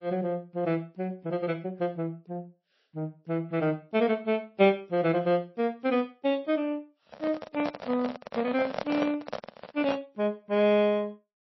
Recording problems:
lossy codec; MP3, then MP3, log-spectral distance 2 dB, nothing above 5 kHz
microphone handling noise; from 7 to 10 s; peak +2 dB vs average level

